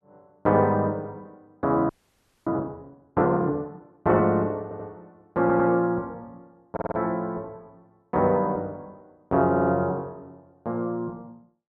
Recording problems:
audio freezing; at 2 s for 0.5 s
stutter; 4 times, first at 4.5 s

